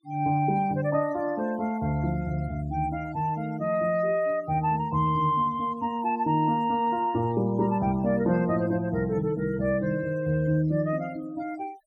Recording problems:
noise reduction artefacts; signal-to-artefact ratio 26 dB

